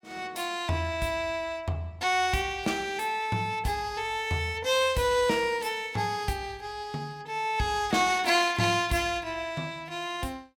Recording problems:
none

